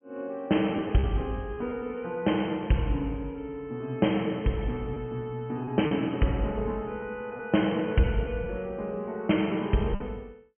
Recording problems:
treble missing; nothing above 3.2 kHz
lost packets; 3% of the sound replaced, filled with repeated pitch periods

